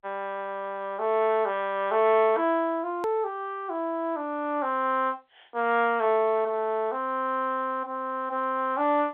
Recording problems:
telephone audio; 300 Hz to 3.7 kHz, G.711
edit click; at 3 s

